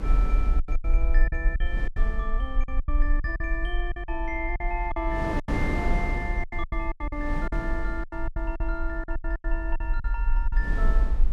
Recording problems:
rumble; below 44 Hz, SNR -4 dB
wind noise; below 310 Hz, SNR 2 dB
lost packets; 14% of the sound replaced, filled with silence

